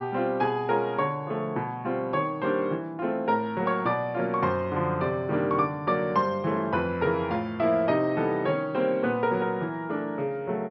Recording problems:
treble cut off; nothing above 5.5 kHz

